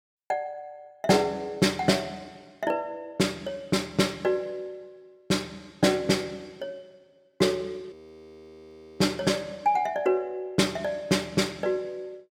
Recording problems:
frozen audio; at 8 s for 1 s

